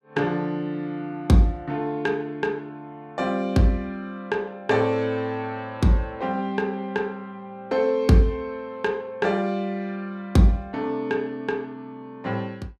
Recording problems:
none

